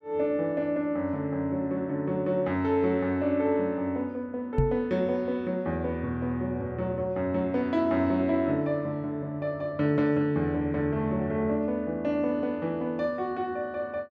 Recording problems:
knock on the microphone; at 4.5 s; peak +6 dB vs average level

